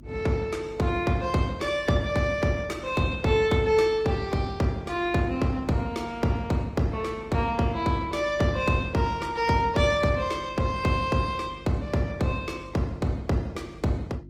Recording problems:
lossy compression; Opus, log-spectral distance 2 dB, nothing above 20.1 kHz
electrical hum; 50 Hz, harmonics up to 350 Hz, SNR 21 dB

